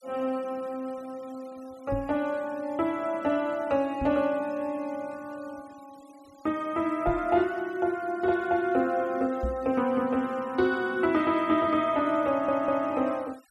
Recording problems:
denoising artefacts; signal-to-artefact ratio 27 dB
microphone bump; 4 times, first at 2 s; peak -1 dB vs average level
stutter; at 12 s

